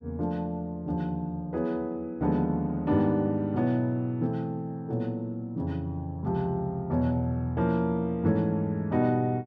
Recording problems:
none

